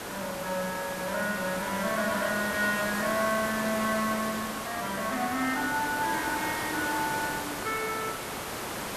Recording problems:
background hiss; slope -4 dB per octave, SNR 4 dB

